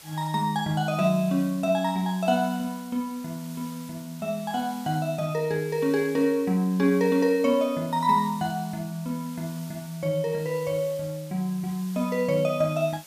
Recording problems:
hiss; slope 0 dB per octave, SNR 20 dB

